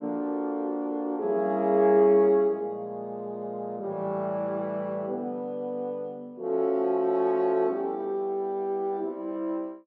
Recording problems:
none

